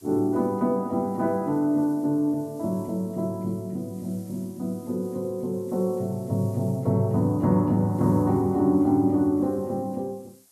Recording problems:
background hiss; SNR 28 dB

